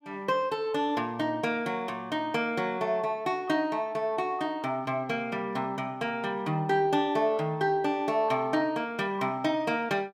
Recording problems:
none

